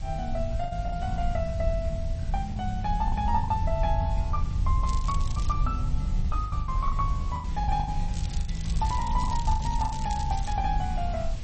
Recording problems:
lossy codec; MP3, log-spectral distance 2 dB, nothing above 8 kHz
background hiss; SNR 17 dB
wind noise; below 70 Hz, SNR 0 dB
packet loss; 10% of the sound replaced, filled with the last packet
crackle; at 5 s and from 8 to 11 s; loose cable, SNR 13 dB

